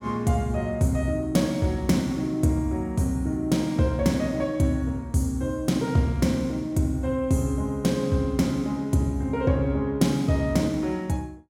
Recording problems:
none

